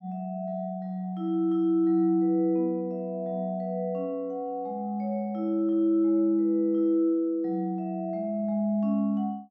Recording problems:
none

